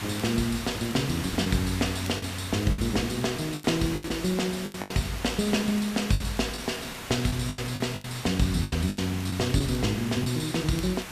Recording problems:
hiss; SNR 9 dB
crackling; vinyl, SNR 25 dB
lost packets; 9% of the sound replaced, filled with the last packet

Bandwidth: 14.5 kHz